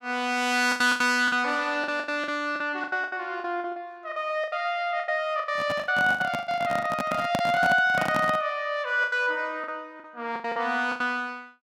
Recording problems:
lost packets; 15% of the sound replaced, filled with the last packet
handling noise; from 5.5 to 8.5 s; peak +2 dB vs average level

